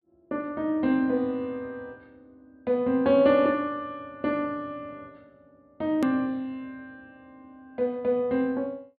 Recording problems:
treble missing; nothing above 4.7 kHz
edit click; at 6 s

